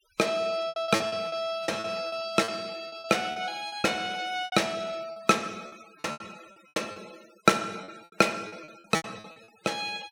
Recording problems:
noise reduction artefacts; signal-to-artefact ratio 22 dB
packet loss; 15% of the sound replaced, filled with repeated pitch periods

